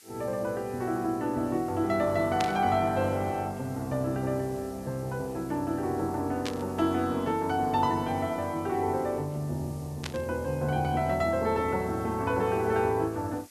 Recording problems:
background hiss; slope +3 dB per octave, SNR 23 dB
burst of static; at 2.5 s, at 6.5 s and at 10 s; peak 0 dB vs average level

